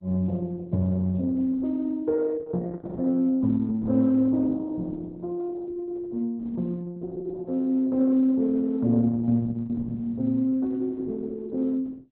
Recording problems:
lossy compression; Opus, log-spectral distance 2 dB

